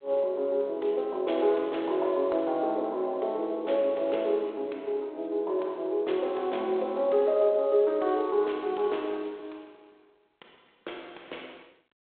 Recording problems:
telephone audio; 340 Hz to 3.6 kHz, G.726

